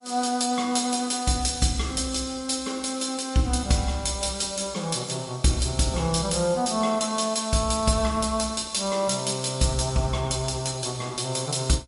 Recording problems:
lossy compression; MP3, log-spectral distance 8 dB, nothing above 10.7 kHz

